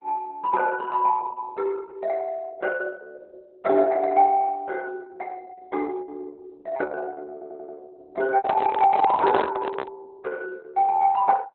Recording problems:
lossy compression; Opus, log-spectral distance 3 dB, nothing above 4 kHz
packet loss; 4% of the sound replaced, filled with repeated pitch periods
stutter; at 7.5 s
handling noise; from 8.5 to 10 s; peak +3 dB vs average level

